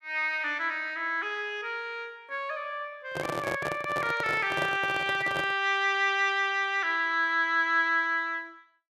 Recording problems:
handling noise; from 3 to 5.5 s; peak -1 dB vs average level

